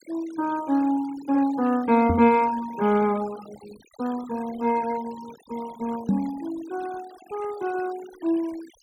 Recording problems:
noise reduction artefacts; signal-to-artefact ratio 20 dB
knock on the microphone; at 2 s and at 6 s; peak +5 dB vs average level

